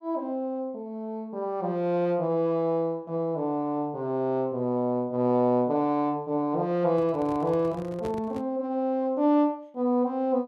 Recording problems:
microphone handling noise; from 7 to 8.5 s; peak -6 dB vs average level

